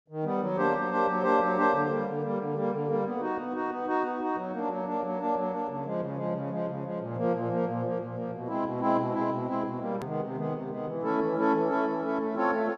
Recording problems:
edit click; at 10 s

